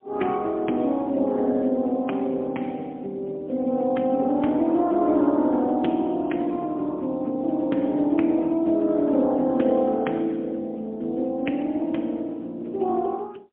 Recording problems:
phone line; 190 Hz to 3.4 kHz, AMR-NB, then MP3

